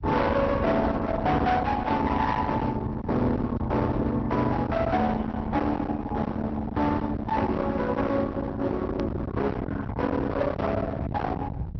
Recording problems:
treble cut off; nothing above 5.8 kHz
lossy compression; Opus, log-spectral distance 2 dB
distorted audio; hard clipping, uneven, signal-to-distortion ratio 6 dB
low-frequency rumble; below 620 Hz, SNR 6 dB
edit click; at 9 s

